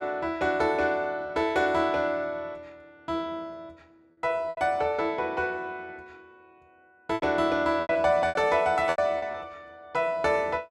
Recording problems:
packet loss; 6% of the sound replaced, filled with repeated pitch periods

